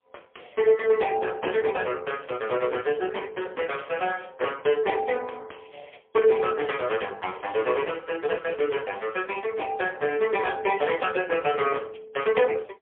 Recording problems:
telephone audio; 320 Hz to 3.3 kHz, AMR-NB, then MP3

